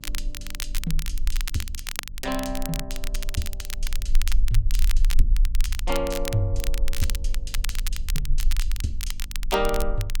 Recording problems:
hum; 50 Hz, harmonics up to 600 Hz, SNR 19 dB
rumble; below 36 Hz, strongest tone 16 Hz, SNR -1 dB
crackle; vinyl, SNR 4 dB

